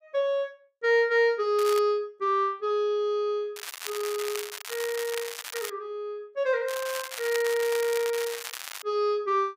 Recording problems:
crackle; at 1.5 s, from 3.5 to 5.5 s and from 6.5 to 9 s; loose cable, SNR 9 dB

